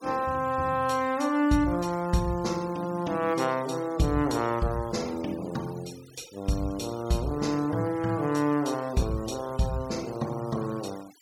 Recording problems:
denoising artefacts; signal-to-artefact ratio 20 dB

